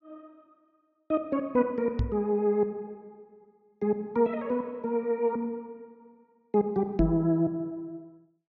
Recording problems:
low-pass filter; nothing above 7.1 kHz
knock on the microphone; at 2 s and at 7 s; peak +3 dB vs average level

